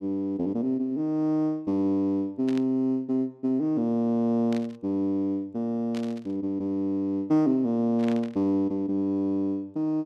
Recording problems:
burst of static; 4 times, first at 2.5 s; peak -10 dB vs average level

